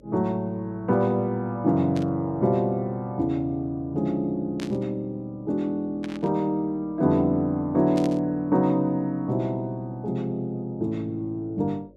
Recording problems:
hum; 50 Hz, harmonics up to 600 Hz, SNR 28 dB
static burst; 4 times, first at 2 s; peak -9 dB vs average level

